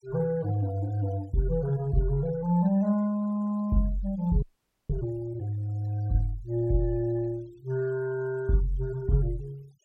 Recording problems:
denoising artefacts; signal-to-artefact ratio 26 dB
frozen audio; at 4.5 s

